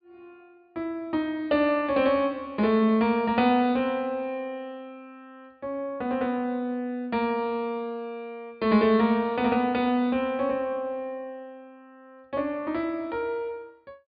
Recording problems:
treble cut off; nothing above 4.8 kHz

